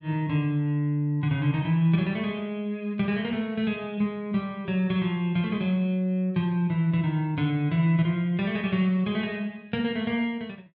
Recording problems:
none

